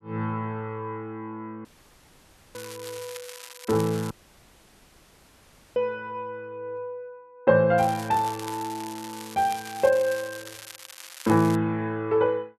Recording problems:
dropout; at 1.5 s for 1 s and at 4 s for 1.5 s
crackling; from 2.5 to 4 s and from 8 to 12 s; loose cable, SNR 15 dB

